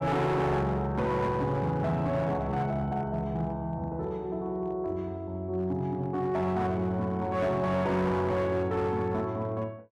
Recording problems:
distortion; hard clipping, signal-to-distortion ratio 11 dB

